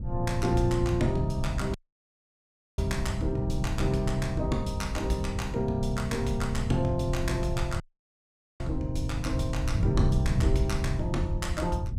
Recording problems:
wind noise; below 110 Hz, SNR 2 dB
dropout; at 2 s for 1 s and at 8 s for 1 s

